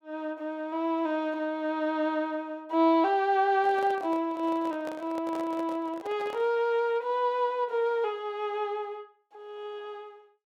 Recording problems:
handling noise; from 3.5 to 6.5 s; peak -8 dB vs average level

